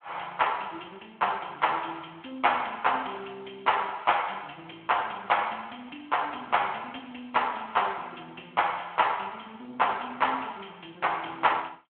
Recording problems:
phone line; 300 Hz to 3.5 kHz, Speex

